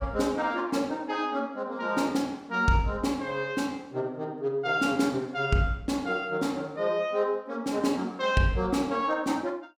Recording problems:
none

